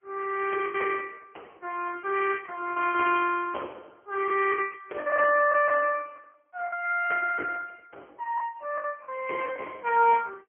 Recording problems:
phone line; 280 Hz to 3.1 kHz, AMR-NB
lost packets; 10% of the sound replaced, filled with the last packet

